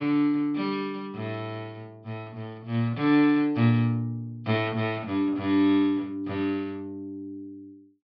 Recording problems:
treble missing; nothing above 5.5 kHz

